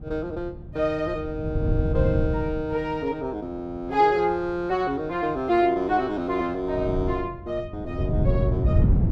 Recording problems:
wind noise; below 140 Hz, SNR 1 dB

